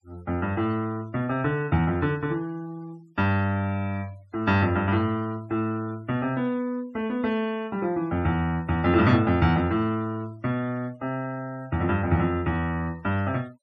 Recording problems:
noise reduction artefacts; signal-to-artefact ratio 24 dB

